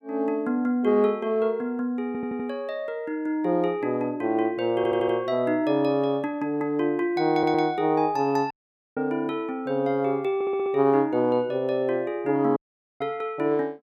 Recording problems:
audio stuttering; 4 times, first at 2 s
audio cutting out; at 8.5 s and at 13 s

